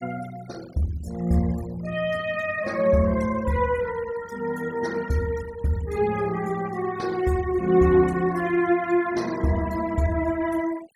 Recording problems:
denoising artefacts; signal-to-artefact ratio 21 dB

